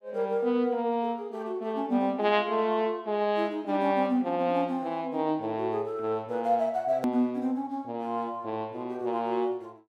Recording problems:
edit click; at 7 s

